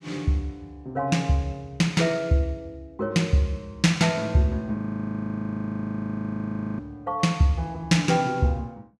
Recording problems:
frozen audio; at 5 s for 2 s

